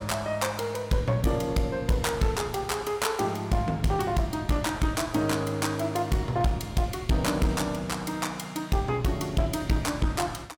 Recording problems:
distortion; hard clipping, uneven, signal-to-distortion ratio 11 dB

